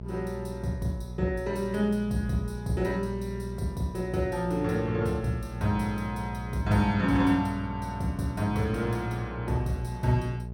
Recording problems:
hum; 60 Hz, harmonics up to 660 Hz, SNR 9 dB

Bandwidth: 17 kHz